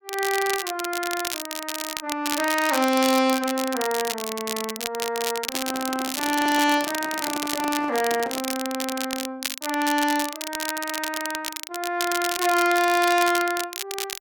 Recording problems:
crackling; vinyl, SNR 6 dB
handling noise; from 5.5 to 8.5 s; peak -6 dB vs average level

